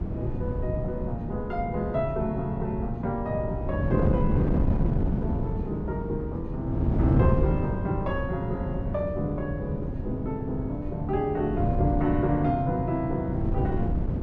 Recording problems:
wind on the microphone; below 220 Hz, SNR -1 dB

